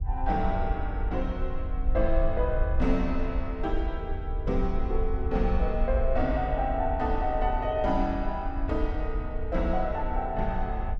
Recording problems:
rumble; below 58 Hz, SNR 2 dB

